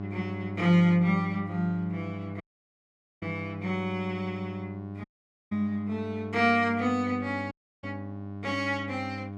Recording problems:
electrical hum; 50 Hz, harmonics up to 1.1 kHz, SNR 10 dB
dropout; at 2.5 s for 1 s, at 5 s and at 7.5 s

